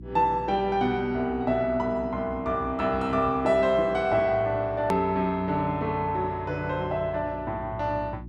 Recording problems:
hum; 60 Hz, harmonics up to 360 Hz, SNR 18 dB
edit click; at 5 s

